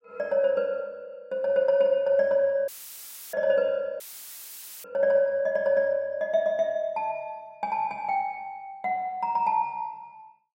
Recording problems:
audio cutting out; at 2.5 s for 0.5 s and at 4 s for 1 s; filled with static

